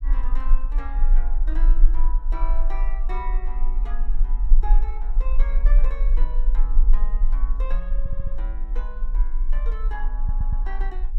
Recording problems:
low-frequency rumble; below 34 Hz, strongest tone 18 Hz, SNR -15 dB
stutter; at 8 s and at 10 s

